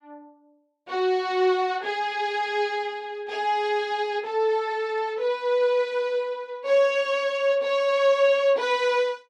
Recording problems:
none

